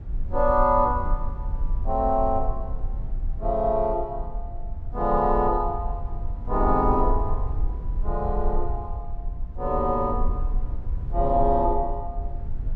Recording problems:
rumble; below 54 Hz, SNR 7 dB

